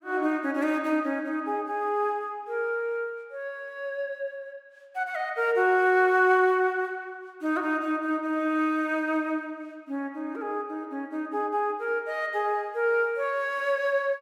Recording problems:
none

